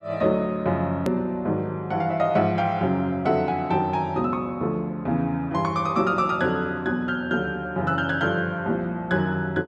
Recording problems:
edit click; at 1 s

